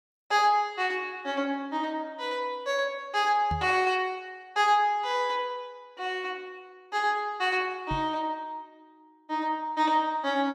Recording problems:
knock on the microphone; at 3.5 s and at 8 s; peak -2 dB vs average level

